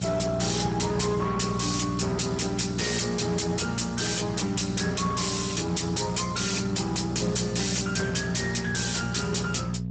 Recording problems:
codec artefacts; Speex, log-spectral distance 11 dB, nothing above 7.8 kHz
distorted audio; hard clipping, uneven, signal-to-distortion ratio 5 dB
hum; 60 Hz, harmonics up to 480 Hz, SNR 5 dB

